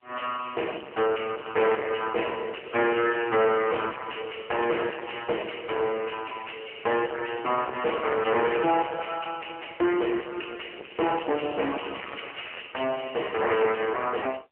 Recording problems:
phone line; 300 Hz to 2.8 kHz, AMR-NB
distortion; soft clipping, signal-to-distortion ratio 6 dB
crackle; at 12 s; loose cable, SNR 15 dB

